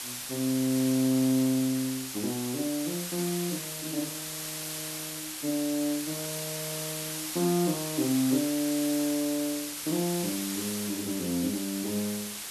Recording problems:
hiss; slope +2 dB per octave, SNR 4 dB

